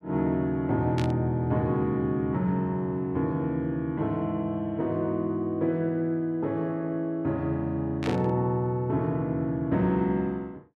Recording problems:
static burst; at 1 s and at 8 s; peak -4 dB vs average level

